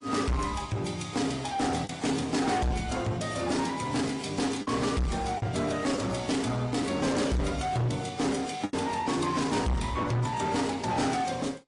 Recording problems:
lossy compression; AAC, then MP3, log-spectral distance 4 dB, nothing above 9.8 kHz
distorted audio; soft clipping, signal-to-distortion ratio 7 dB
lost packets; 2% of the sound replaced, filled with the last packet

